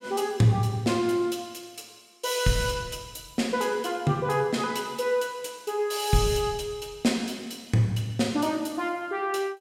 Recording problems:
none

